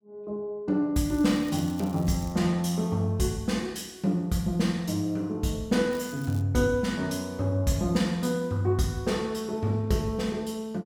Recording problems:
crackle; from 1 to 2.5 s and at 6 s; loose cable, SNR 21 dB

